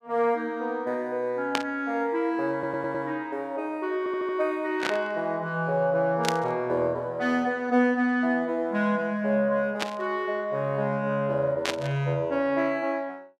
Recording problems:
burst of static; 5 times, first at 1.5 s; peak +4 dB vs average level
stutter; at 2.5 s and at 4 s

